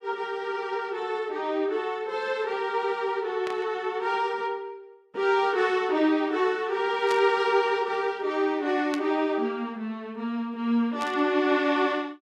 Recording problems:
burst of static; 4 times, first at 3.5 s; peak -6 dB vs average level

